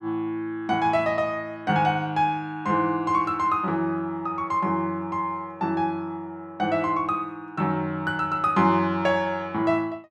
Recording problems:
none

